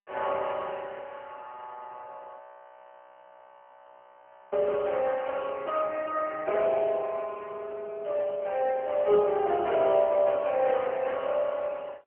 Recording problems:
telephone audio; 340 Hz to 3.2 kHz, AMR-NB
audio freezing; at 2.5 s for 2 s

